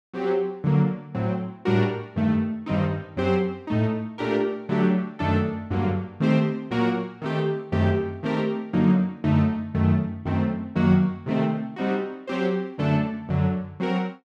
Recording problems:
none

